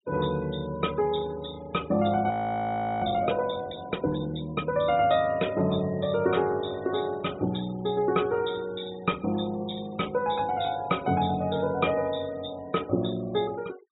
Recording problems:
treble missing; nothing above 4 kHz
denoising artefacts; signal-to-artefact ratio 22 dB
frozen audio; at 2.5 s for 0.5 s

